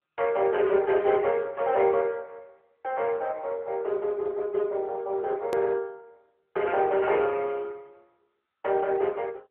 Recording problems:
phone line; 340 Hz to 3.2 kHz, AMR-NB
hard cut with a click; at 5.5 s

